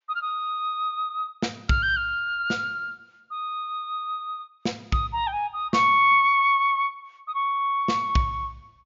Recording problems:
low-pass filter; nothing above 7.2 kHz

